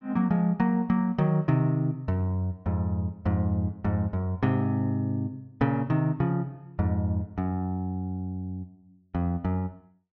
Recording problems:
none

